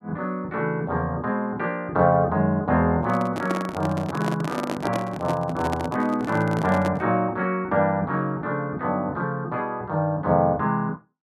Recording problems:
microphone handling noise; from 3 to 7 s; peak +1 dB vs average level

